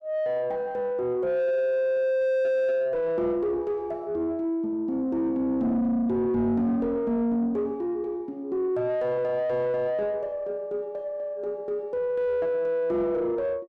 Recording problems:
distorted audio; soft clipping, signal-to-distortion ratio 6 dB

